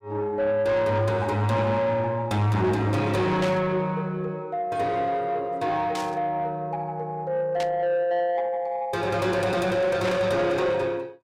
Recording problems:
distorted audio; soft clipping, signal-to-distortion ratio 11 dB
burst of static; 4 times, first at 3.5 s; peak -4 dB vs average level

